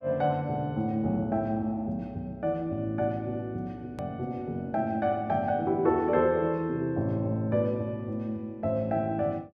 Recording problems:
hard cut with a click; at 4 s

